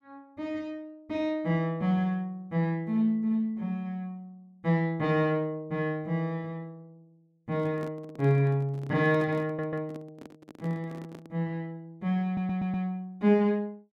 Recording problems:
handling noise; from 7.5 to 11 s; peak -8 dB vs average level
audio stuttering; at 9.5 s and at 12 s

